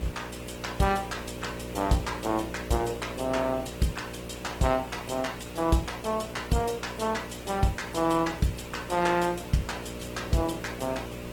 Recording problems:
lossy codec; Opus, log-spectral distance 6 dB, nothing above 18.3 kHz
hum; 60 Hz, harmonics up to 600 Hz, SNR 11 dB
background hiss; SNR 15 dB

